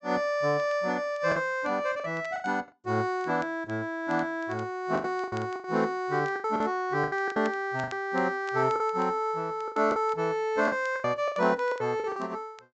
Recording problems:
low-pass filter; nothing above 8 kHz
crackle; vinyl, SNR 26 dB
packet loss; 10% of the sound replaced, filled with the last packet

